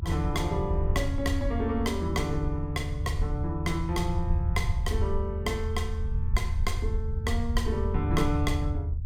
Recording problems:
low-frequency rumble; below 82 Hz, SNR -1 dB

